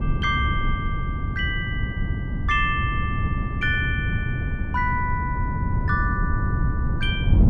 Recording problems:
wind noise; below 140 Hz, SNR -1 dB

